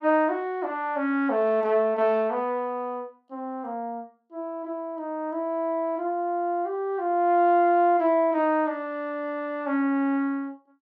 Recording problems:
none

